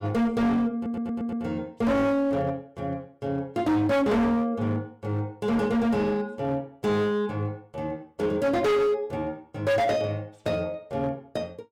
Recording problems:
distortion; hard clipping, signal-to-distortion ratio 7 dB
audio stuttering; at 0.5 s

